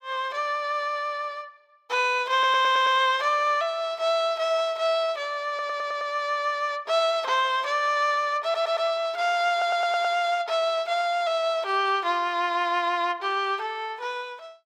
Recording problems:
audio stuttering; 4 times, first at 2.5 s

